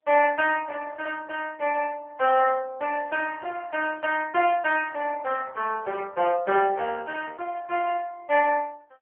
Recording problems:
telephone audio; 320 Hz to 3.1 kHz, AMR-NB

